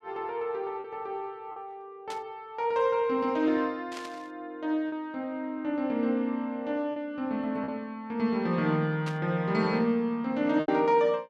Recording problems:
lost packets; 2% of the sound replaced, filled with repeated pitch periods
static burst; at 2 s, at 4 s and at 9 s; peak -7 dB vs average level

